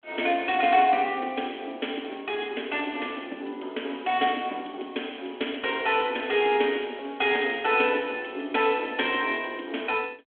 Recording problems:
phone line; 260 Hz to 3.4 kHz, G.726

